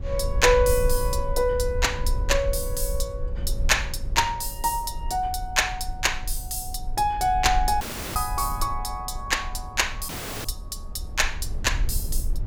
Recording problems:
low-frequency rumble; below 62 Hz, SNR 7 dB
audio cutting out; at 8 s and at 10 s

